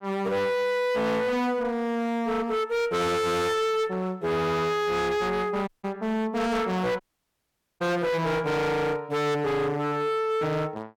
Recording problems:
distorted audio; hard clipping, signal-to-distortion ratio 6 dB
audio cutting out; at 5.5 s and at 7 s for 1 s

